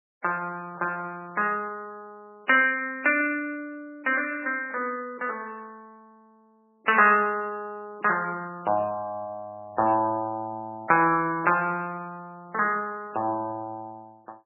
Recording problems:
codec artefacts; MP3, log-spectral distance 2 dB, nothing above 2.4 kHz

